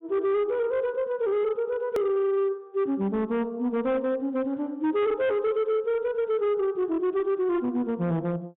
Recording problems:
low-pass filter; nothing above 3.7 kHz
distorted audio; hard clipping, signal-to-distortion ratio 12 dB
edit click; at 2 s

